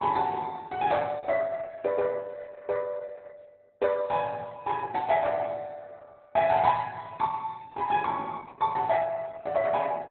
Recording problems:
lossy codec; Opus, log-spectral distance 4 dB, nothing above 3.8 kHz

